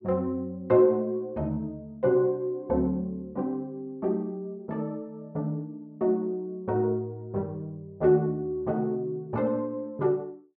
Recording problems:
none

